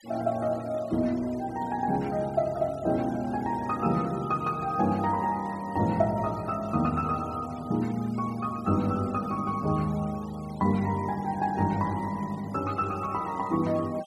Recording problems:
noise reduction artefacts; signal-to-artefact ratio 21 dB

